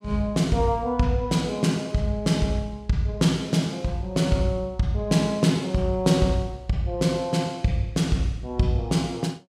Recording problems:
none

